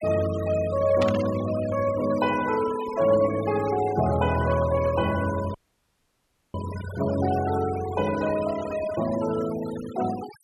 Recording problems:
denoising artefacts; signal-to-artefact ratio 14 dB
burst of static; at 1 s; peak -4 dB vs average level
dropout; at 5.5 s for 1 s

